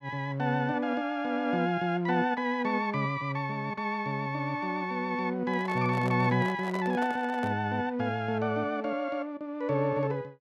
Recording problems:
handling noise; from 5.5 to 7.5 s; peak -6 dB vs average level

